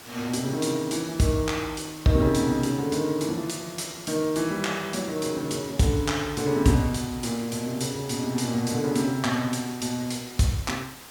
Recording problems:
hiss; slope -2 dB per octave, SNR 18 dB

